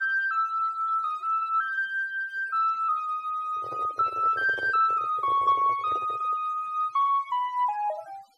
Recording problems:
noise reduction artefacts; signal-to-artefact ratio 26 dB
microphone handling noise; from 3.5 to 6.5 s; peak -9 dB vs average level

